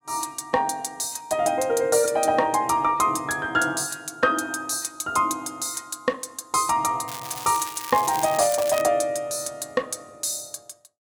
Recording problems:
crackle; from 7 to 9 s; loose cable, SNR 11 dB

